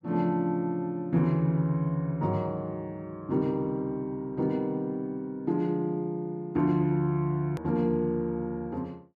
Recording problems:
edit click; at 7.5 s

